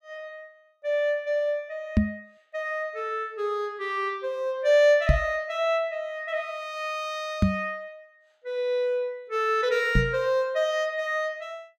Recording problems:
microphone thump; 4 times, first at 2 s; peak +9 dB vs average level

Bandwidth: 15.5 kHz